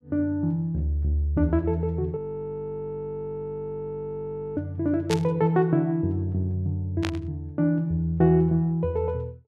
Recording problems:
audio freezing; at 2 s for 2.5 s
burst of static; at 5 s and at 7 s; peak 0 dB vs average level

